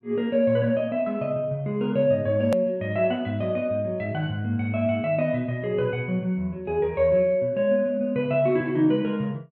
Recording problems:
click at an edit; at 2.5 s

